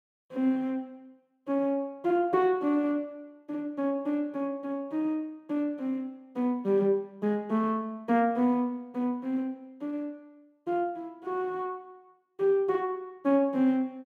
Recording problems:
none

